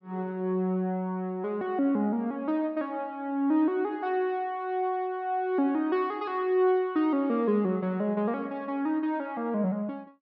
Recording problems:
treble cut off; nothing above 5.8 kHz

